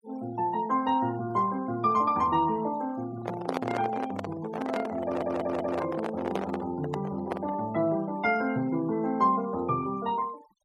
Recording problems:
denoising artefacts; signal-to-artefact ratio 20 dB
handling noise; from 3 to 7.5 s; peak +2 dB vs average level
stutter; at 5 s

